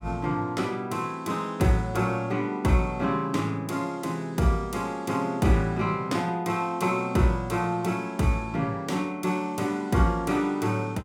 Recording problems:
none

